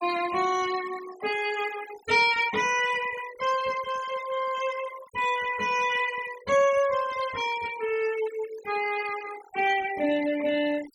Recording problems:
noise reduction artefacts; signal-to-artefact ratio 15 dB

